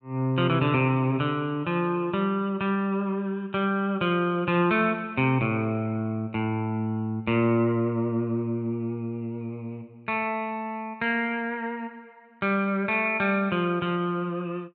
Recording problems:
none

